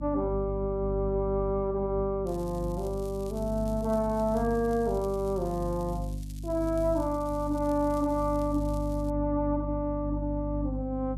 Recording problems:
mains hum; 50 Hz, harmonics up to 300 Hz, SNR 7 dB
crackle; from 2.5 to 9 s; loose cable, SNR 23 dB

